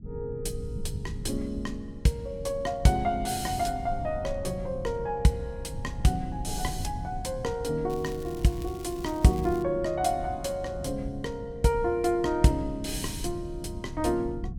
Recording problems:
low-frequency rumble; below 140 Hz, SNR 11 dB
crackle; from 8 to 9.5 s; loose cable, SNR 21 dB

